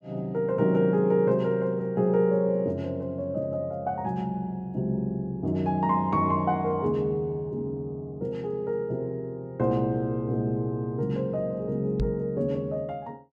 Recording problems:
knock on the microphone; at 12 s; peak +2 dB vs average level

